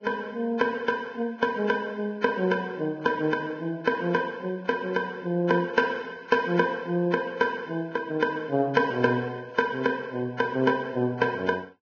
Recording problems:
codec artefacts; Vorbis, log-spectral distance 3 dB, nothing above 5.7 kHz

